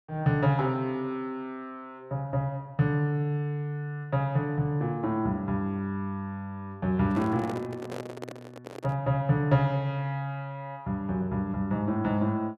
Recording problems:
handling noise; from 7 to 9 s; peak -5 dB vs average level

